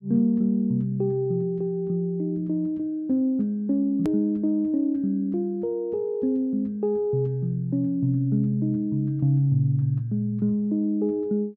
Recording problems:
edit click; at 4 s

